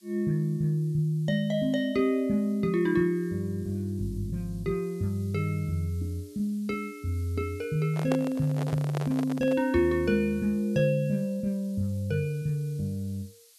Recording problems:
background hiss; slope +5 dB per octave, SNR 27 dB
microphone handling noise; from 8 to 9.5 s; peak 0 dB vs average level

